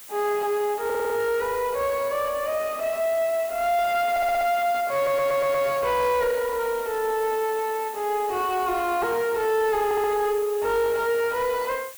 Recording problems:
distortion; soft clipping, signal-to-distortion ratio 11 dB
hiss; slope +1 dB per octave, SNR 16 dB
audio stuttering; 4 times, first at 1 s

